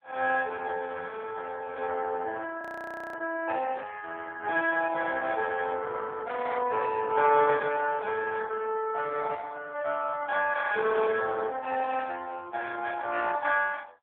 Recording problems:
phone line; 300 Hz to 3.3 kHz, AMR-NB
frozen audio; at 2.5 s for 0.5 s

